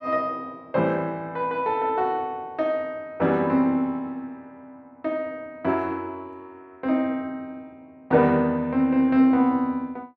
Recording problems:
none

